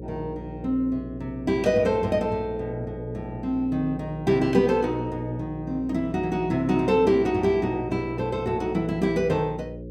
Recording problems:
hum; 60 Hz, harmonics up to 540 Hz, SNR 13 dB

